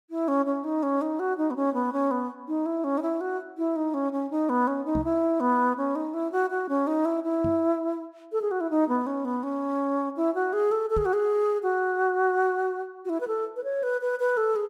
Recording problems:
knock on the microphone; at 5 s, at 7.5 s and at 11 s; peak -2 dB vs average level

